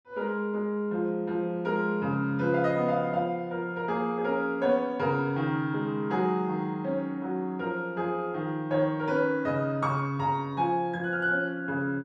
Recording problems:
none

